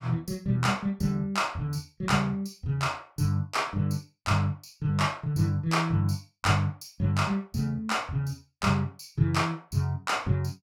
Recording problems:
none

